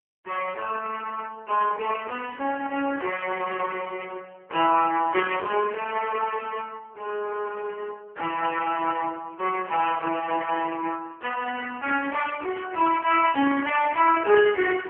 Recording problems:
telephone audio; 280 Hz to 2.9 kHz, AMR-NB

